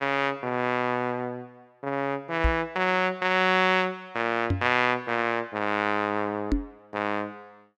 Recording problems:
knock on the microphone; at 2.5 s, at 4.5 s and at 6.5 s; peak +4 dB vs average level

